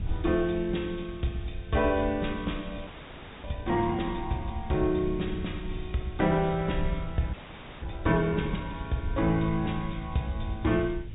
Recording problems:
treble missing; nothing above 4 kHz
background hiss; SNR 27 dB
rumble; below 90 Hz, SNR 10 dB
frozen audio; at 3 s for 0.5 s and at 7.5 s

